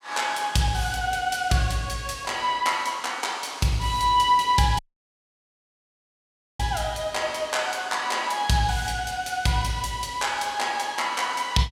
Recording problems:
dropout; at 5 s for 2 s

